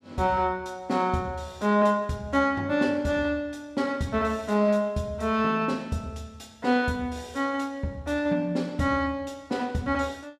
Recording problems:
none

